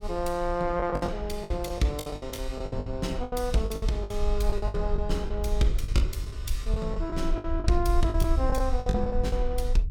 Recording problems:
rumble; below 56 Hz, SNR 2 dB
lost packets; 15% of the sound replaced, filled with the last packet

